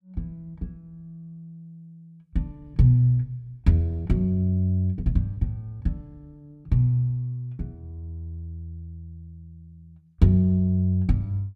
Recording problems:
none

